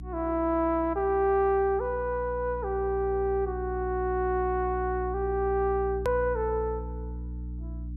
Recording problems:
hum; 60 Hz, harmonics up to 300 Hz, SNR 10 dB
edit click; at 6 s

